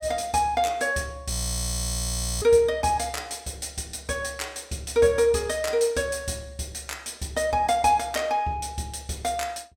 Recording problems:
audio freezing; at 1.5 s for 1 s

